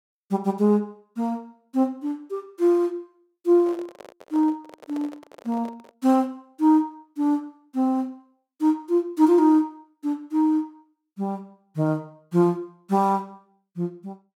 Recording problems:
handling noise; from 3.5 to 6 s; peak -12 dB vs average level

